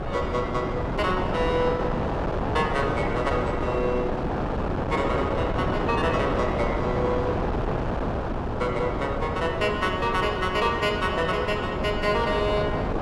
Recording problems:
wind noise; below 780 Hz, SNR 1 dB

